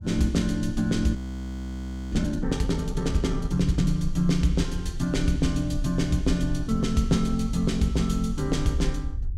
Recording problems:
rumble; below 62 Hz, SNR 8 dB
audio freezing; at 1 s for 1 s

